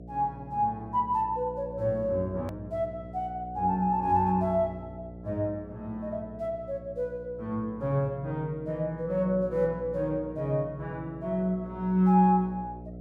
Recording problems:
electrical hum; 60 Hz, harmonics up to 720 Hz, SNR 15 dB
hard cut with a click; at 2.5 s

